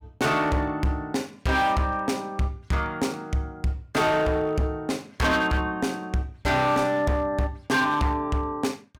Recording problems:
distorted audio; hard clipping, signal-to-distortion ratio 10 dB

